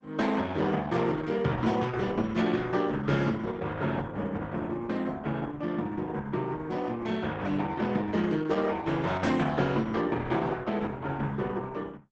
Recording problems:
lossy compression; Opus, log-spectral distance 3 dB, nothing above 8 kHz

